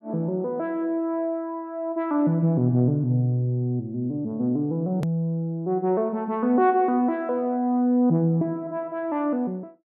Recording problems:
edit click; at 5 s

